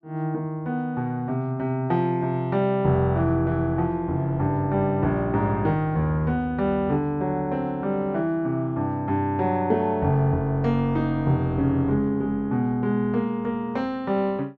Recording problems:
none

